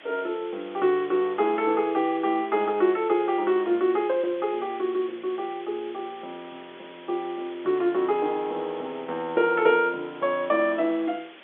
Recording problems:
phone line; 260 Hz to 3.6 kHz, G.711
hiss; SNR 21 dB

